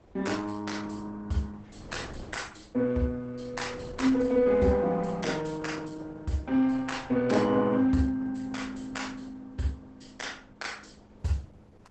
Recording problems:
codec artefacts; Opus, log-spectral distance 4 dB, nothing above 8 kHz
wind on the microphone; below 510 Hz, SNR 22 dB

